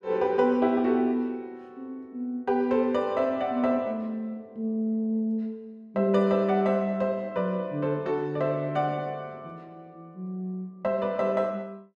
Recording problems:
none

